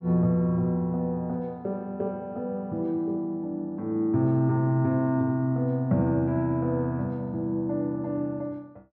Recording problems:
treble missing; nothing above 8 kHz

